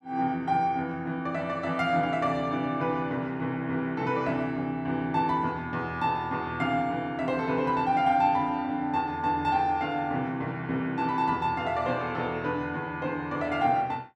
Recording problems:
none

